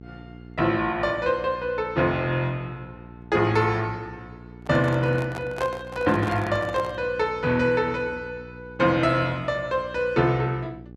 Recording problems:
electrical hum; 60 Hz, harmonics up to 780 Hz, SNR 19 dB
microphone handling noise; from 4.5 to 7 s; peak -5 dB vs average level

